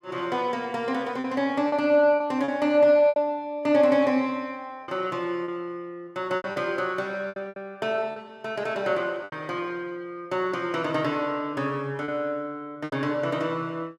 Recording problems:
lost packets; 6% of the sound replaced, filled with repeated pitch periods

